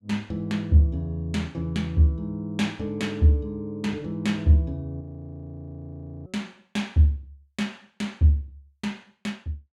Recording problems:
frozen audio; at 5 s for 1.5 s

